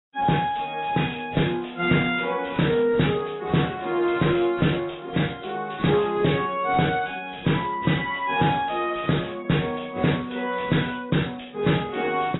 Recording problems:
codec artefacts; AAC, log-spectral distance 6 dB, nothing above 3.8 kHz
distortion; soft clipping, signal-to-distortion ratio 10 dB

